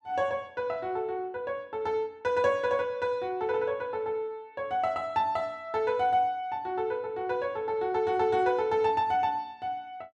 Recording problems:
none

